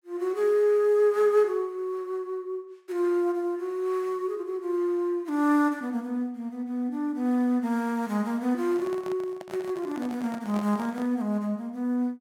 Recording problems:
microphone handling noise; from 8.5 to 11 s; peak -9 dB vs average level

